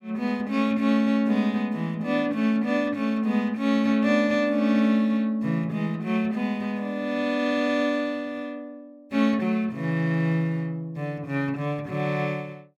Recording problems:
none

